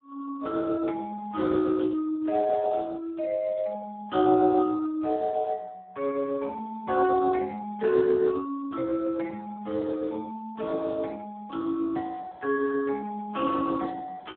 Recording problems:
telephone audio; 240 Hz to 2.1 kHz, Speex

